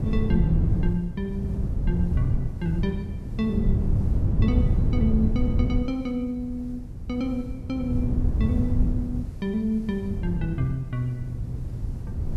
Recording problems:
hiss; slope -4 dB per octave, SNR 29 dB
wind noise; below 120 Hz, SNR -2 dB

